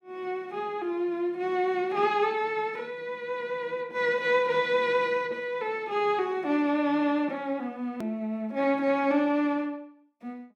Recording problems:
hard cut with a click; at 8 s

